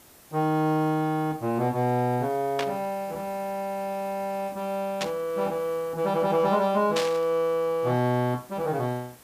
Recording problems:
hiss; slope -3 dB per octave, SNR 23 dB
static burst; at 2.5 s, at 5 s and at 7 s; peak +1 dB vs average level

